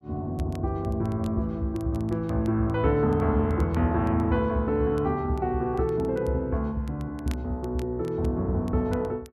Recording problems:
crackling; vinyl, SNR 28 dB

